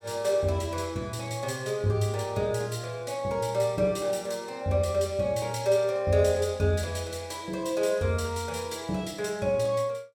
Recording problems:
none

